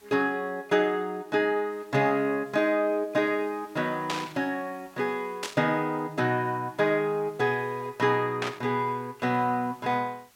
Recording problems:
hiss; slope 0 dB per octave, SNR 30 dB
static burst; at 4 s, at 5.5 s and at 8.5 s; peak 0 dB vs average level

